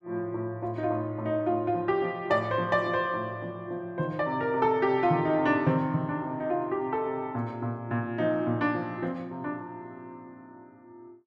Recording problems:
none

